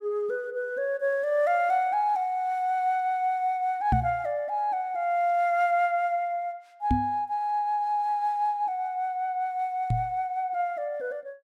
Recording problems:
knock on the microphone; at 4 s, at 7 s and at 10 s; peak +5 dB vs average level

